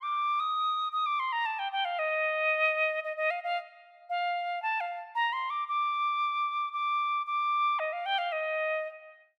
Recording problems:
none

